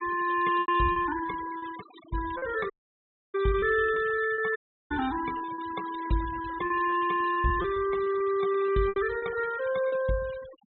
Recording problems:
low-pass filter; nothing above 4 kHz
noise reduction artefacts; signal-to-artefact ratio 17 dB
lost packets; 12% of the sound replaced, filled with repeated pitch periods
audio cutting out; at 2.5 s for 0.5 s and at 4.5 s

